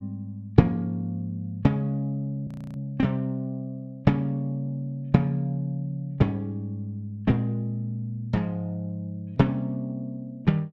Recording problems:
frozen audio; at 2.5 s

